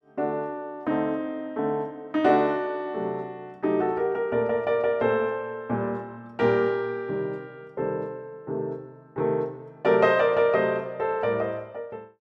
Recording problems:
none

